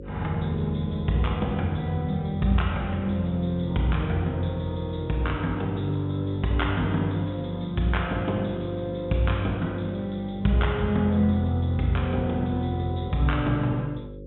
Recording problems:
treble cut off; nothing above 3.7 kHz
hum; 50 Hz, harmonics up to 550 Hz, SNR 16 dB

